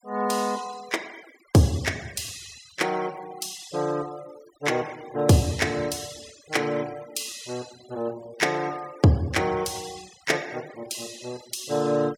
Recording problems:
denoising artefacts; signal-to-artefact ratio 19 dB

